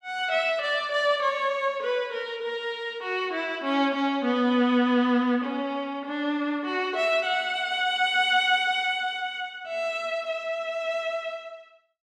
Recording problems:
none

